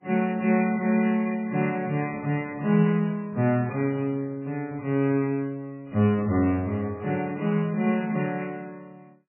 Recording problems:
codec artefacts; MP3, log-spectral distance 2 dB, nothing above 2.4 kHz

